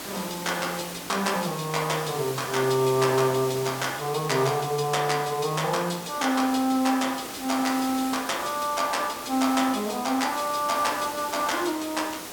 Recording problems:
hiss; slope -3 dB per octave, SNR 10 dB

